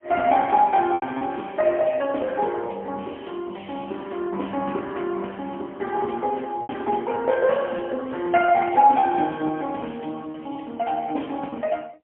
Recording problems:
telephone audio; 220 Hz to 2.8 kHz, AMR-NB, then MP3
packet loss; 3% of the sound replaced, filled with repeated pitch periods

